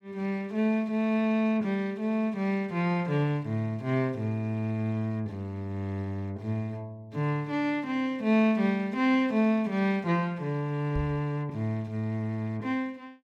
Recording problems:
knock on the microphone; at 11 s; peak -2 dB vs average level

